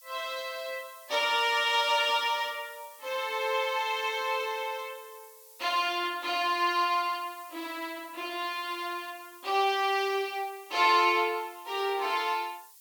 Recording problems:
background hiss; slope +6 dB per octave, SNR 22 dB

